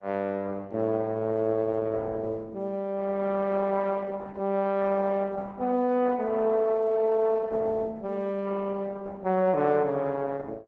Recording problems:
lossy codec; Opus, log-spectral distance 3 dB

